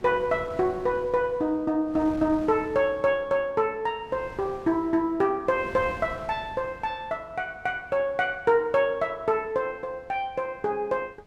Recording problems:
wind noise; below 620 Hz, SNR 20 dB

